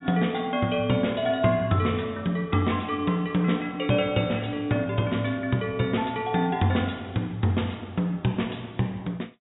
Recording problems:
treble cut off; nothing above 4 kHz

